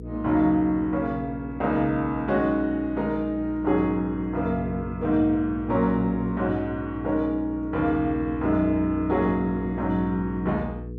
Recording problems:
electrical hum; 60 Hz, harmonics up to 480 Hz, SNR 12 dB

